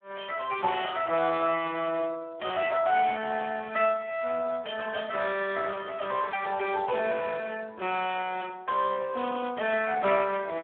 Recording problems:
telephone audio; 260 Hz to 3.5 kHz, Speex

